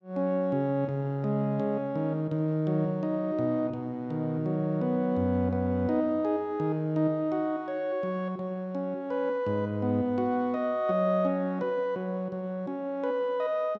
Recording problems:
none

